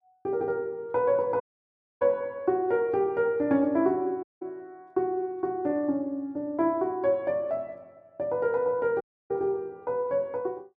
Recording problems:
dropout; at 1.5 s for 0.5 s, at 4 s and at 9 s

